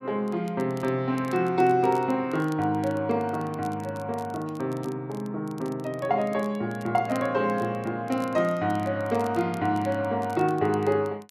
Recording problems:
crackling; vinyl, SNR 25 dB

